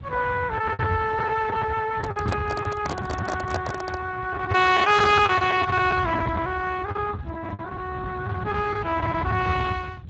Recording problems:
lossy codec; Speex, log-spectral distance 4 dB, nothing above 7.3 kHz
rumble; below 170 Hz, SNR 9 dB
packet loss; 10% of the sound replaced, filled with the last packet
microphone handling noise; from 2 to 4 s; peak -1 dB vs average level

